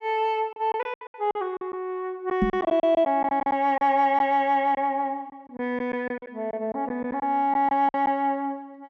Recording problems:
packet loss; 10% of the sound replaced, filled with silence
microphone thump; at 2.5 s; peak +5 dB vs average level

